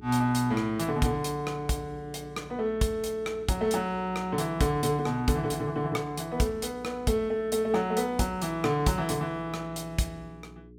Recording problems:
hum; 60 Hz, harmonics up to 420 Hz, SNR 20 dB

